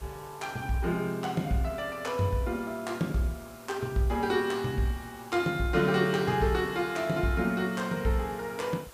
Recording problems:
background hiss; slope -3 dB per octave, SNR 21 dB

